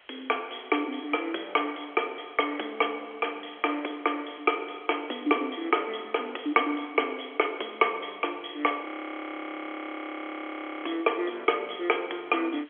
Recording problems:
telephone audio; 260 Hz to 3.3 kHz, G.711
hiss; SNR 25 dB
audio freezing; at 9 s for 2 s

